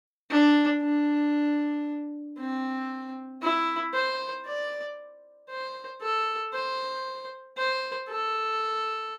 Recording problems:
none

